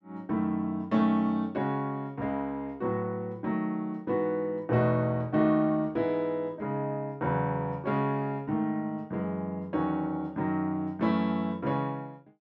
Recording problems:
none

